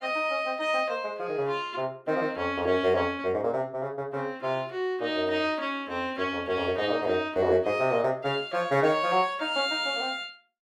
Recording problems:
none

